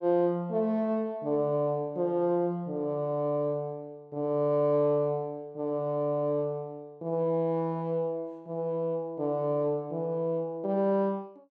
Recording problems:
none

